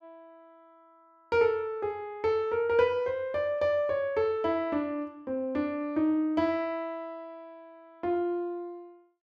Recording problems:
none

